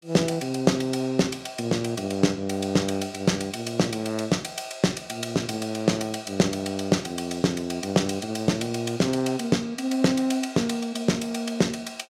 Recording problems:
none

